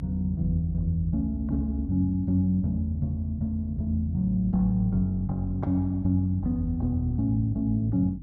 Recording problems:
hum; 50 Hz, harmonics up to 300 Hz, SNR 15 dB

